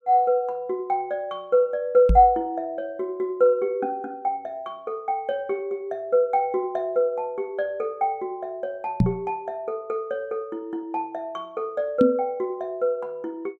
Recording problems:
microphone thump; at 2 s, at 9 s and at 12 s; peak +9 dB vs average level

